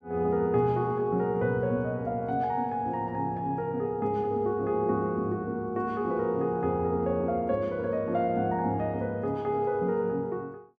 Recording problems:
none

